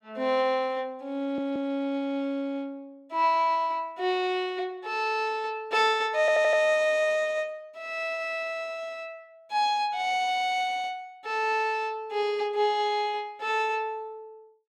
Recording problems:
stutter; at 1 s and at 6 s

